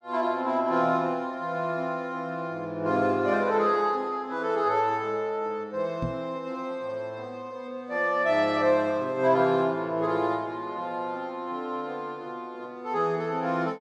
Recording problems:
knock on the microphone; at 6 s; peak -1 dB vs average level

